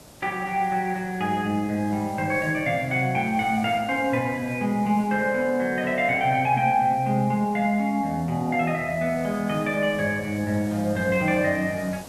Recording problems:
hiss; SNR 21 dB

